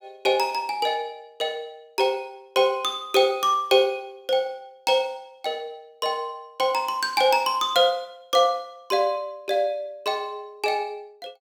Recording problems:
none

